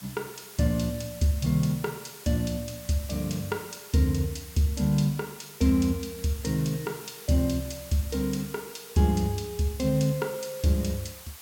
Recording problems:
hiss; slope 0 dB per octave, SNR 15 dB

